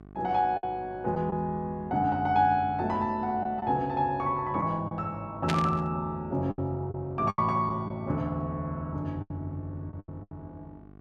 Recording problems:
hum; 50 Hz, harmonics up to 1.5 kHz, SNR 21 dB
lost packets; 6% of the sound replaced, filled with the last packet
static burst; at 5.5 s; peak +2 dB vs average level

